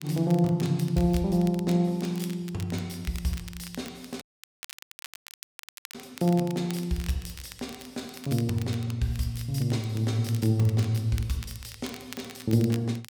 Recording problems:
crackle; vinyl, SNR 18 dB
audio cutting out; at 4 s for 1.5 s

